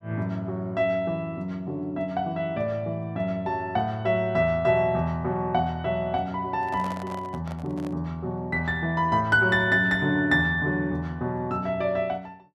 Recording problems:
handling noise; from 6.5 to 8 s; peak -8 dB vs average level

